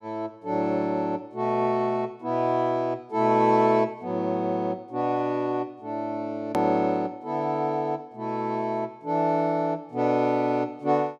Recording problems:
edit click; at 6.5 s

